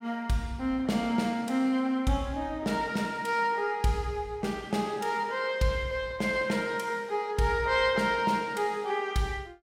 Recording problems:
none

